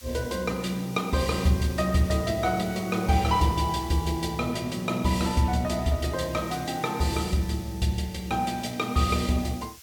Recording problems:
background hiss; slope +4 dB per octave, SNR 19 dB

